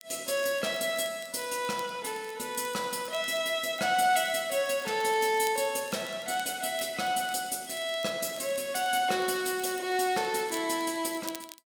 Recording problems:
crackling; vinyl, SNR 20 dB

